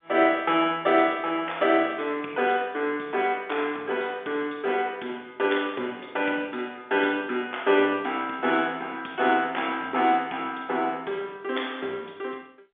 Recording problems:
telephone audio; 220 Hz to 3.6 kHz, G.711

